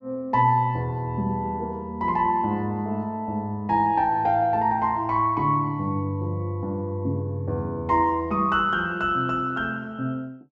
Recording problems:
none

